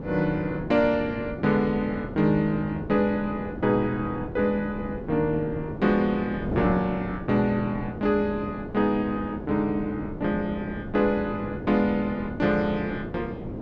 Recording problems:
wind on the microphone; below 420 Hz, SNR 9 dB

